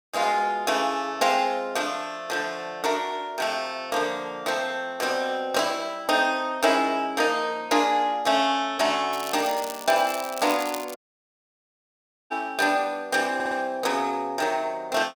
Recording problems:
crackle; from 9 to 11 s; loose cable, SNR 13 dB
dropout; at 11 s for 1.5 s
audio stuttering; at 13 s

